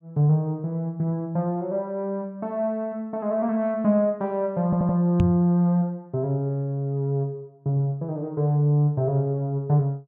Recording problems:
audio stuttering; at 4.5 s
microphone bump; at 5 s; peak +6 dB vs average level

